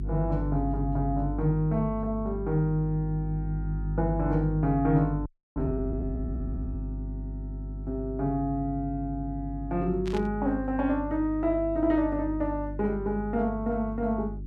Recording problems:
hum; 50 Hz, harmonics up to 400 Hz, SNR 7 dB
frozen audio; at 5.5 s
static burst; at 10 s; peak -9 dB vs average level

